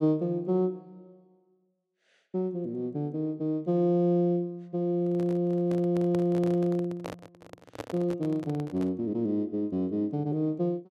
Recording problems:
handling noise; from 5 to 9 s; peak -5 dB vs average level

